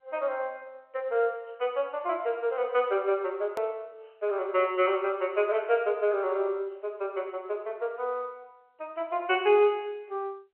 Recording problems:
telephone audio; 320 Hz to 3.2 kHz, G.711
hard cut with a click; at 3.5 s

